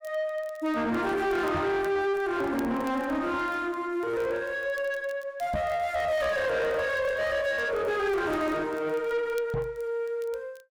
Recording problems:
distortion; soft clipping, signal-to-distortion ratio 7 dB
crackle; vinyl, SNR 28 dB
microphone bump; at 1.5 s, at 5.5 s and at 9.5 s; peak 0 dB vs average level

